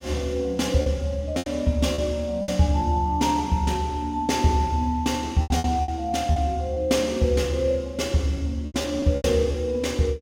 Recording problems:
packet loss; 7% of the sound replaced, filled with repeated pitch periods

